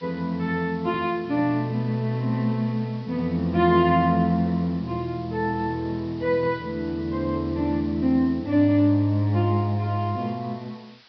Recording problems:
treble cut off; nothing above 5.5 kHz
hiss; SNR 27 dB

